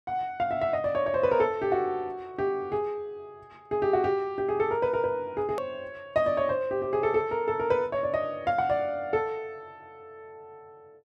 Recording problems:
click at an edit; at 5.5 s

